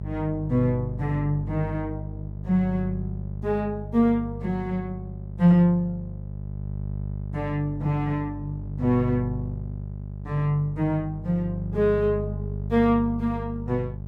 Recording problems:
hum; 50 Hz, harmonics up to 600 Hz, SNR 8 dB

